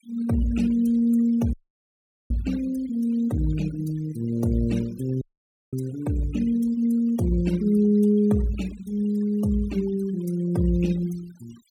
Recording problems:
denoising artefacts; signal-to-artefact ratio 21 dB
dropout; at 1.5 s for 1 s and at 5 s for 0.5 s

